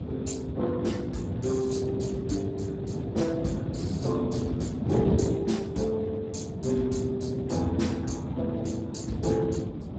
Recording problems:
lossy codec; Speex, log-spectral distance 4 dB, nothing above 7.3 kHz
wind noise; below 300 Hz, SNR 3 dB

